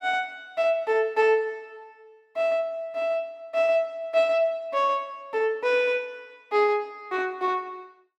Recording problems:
none

